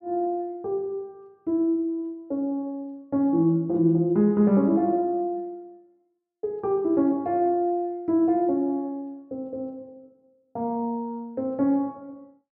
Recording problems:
none

